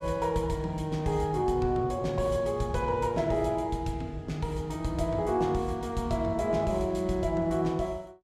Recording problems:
none

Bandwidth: 14.5 kHz